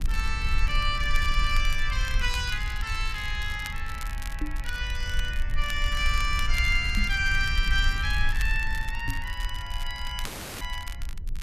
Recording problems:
rumble; below 52 Hz, strongest tone 18 Hz, SNR 3 dB
crackling; vinyl, SNR 15 dB
microphone bump; at 4.5 s, at 7 s and at 9 s; peak 0 dB vs average level
dropout; at 10 s

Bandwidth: 14 kHz